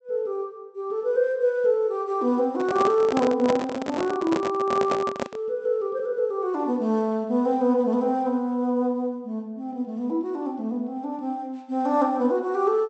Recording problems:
low-pass filter; nothing above 7.9 kHz
microphone handling noise; from 2.5 to 5.5 s; peak +2 dB vs average level

